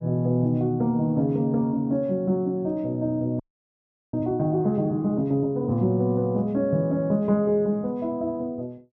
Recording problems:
frozen audio; at 3.5 s for 0.5 s

